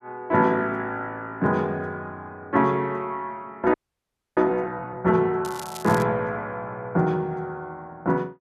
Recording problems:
audio freezing; at 3.5 s for 0.5 s
crackling; at 5.5 s; loose cable, SNR 16 dB

